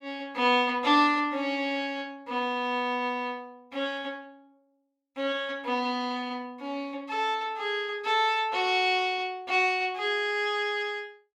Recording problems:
none

